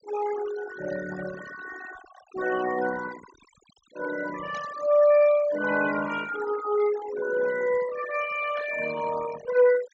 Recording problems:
low-pass filter; nothing above 8 kHz
denoising artefacts; signal-to-artefact ratio 13 dB
static burst; at 4.5 s and at 8.5 s; peak -14 dB vs average level

